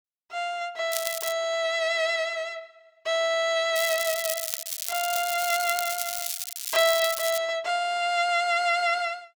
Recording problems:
crackle; at 1 s and from 4 to 7.5 s; loose cable, SNR 5 dB

